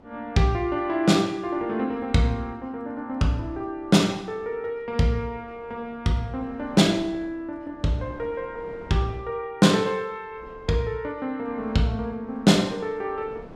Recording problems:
wind on the microphone; below 600 Hz, SNR 24 dB

